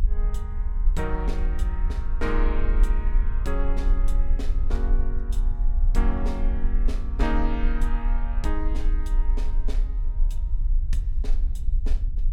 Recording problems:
rumble; below 42 Hz, strongest tone 30 Hz, SNR -7 dB

